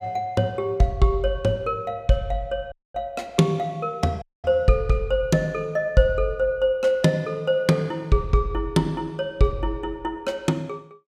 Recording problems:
audio cutting out; at 2.5 s and at 4 s

